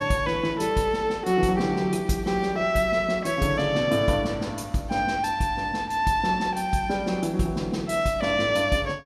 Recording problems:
none

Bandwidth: 13.5 kHz